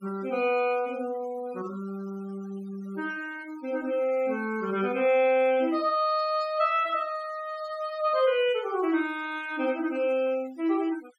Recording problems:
noise reduction artefacts; signal-to-artefact ratio 23 dB

